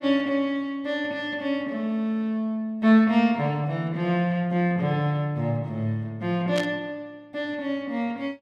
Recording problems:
burst of static; at 6.5 s; peak -3 dB vs average level

